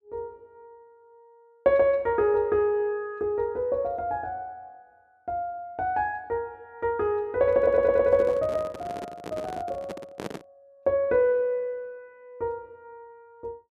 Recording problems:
handling noise; from 7.5 to 10 s; peak -4 dB vs average level
audio stuttering; at 7.5 s

